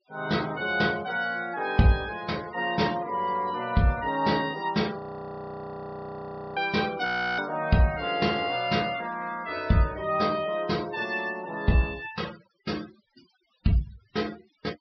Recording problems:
treble cut off; nothing above 5.5 kHz
denoising artefacts; signal-to-artefact ratio 20 dB
audio freezing; at 5 s for 1.5 s and at 7 s

